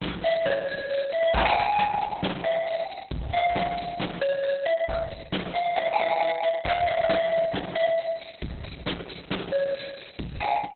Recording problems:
lossy compression; Opus, log-spectral distance 8 dB, nothing above 4 kHz
distorted audio; soft clipping, signal-to-distortion ratio 6 dB

